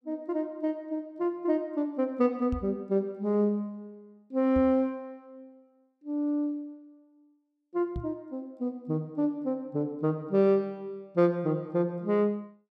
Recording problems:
microphone thump; at 2.5 s, at 4.5 s and at 8 s; peak -2 dB vs average level

